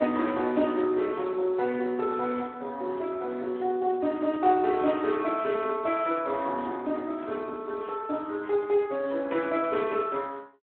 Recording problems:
telephone audio; 260 Hz to 2.9 kHz, Speex

